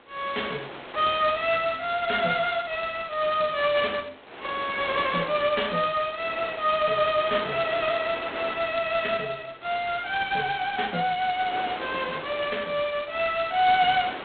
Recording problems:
telephone audio; 260 Hz to 3.9 kHz, G.726
wind noise; below 2.5 kHz, SNR 14 dB

